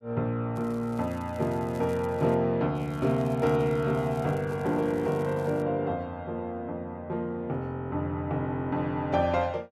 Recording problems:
crackling; from 0.5 to 2.5 s and from 3 to 5.5 s; loose cable, SNR 26 dB

